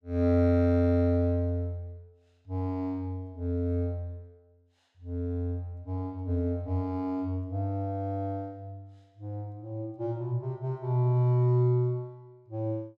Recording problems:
none

